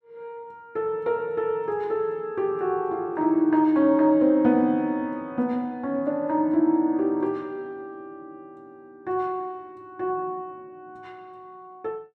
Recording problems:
none

